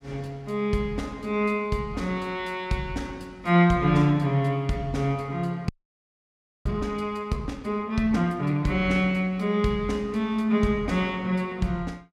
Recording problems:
audio freezing; at 5.5 s for 1 s

